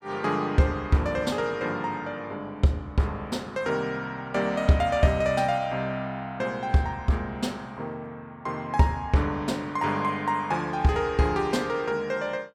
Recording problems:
none

